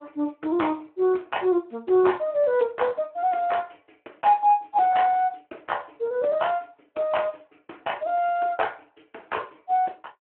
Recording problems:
phone line; 260 Hz to 3.1 kHz, Speex

